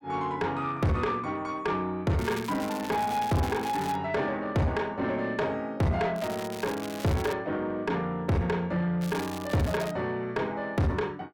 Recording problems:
distorted audio; soft clipping, signal-to-distortion ratio 6 dB
crackle; from 2 to 4 s, from 6 to 7.5 s and at 9 s; loose cable, SNR 13 dB

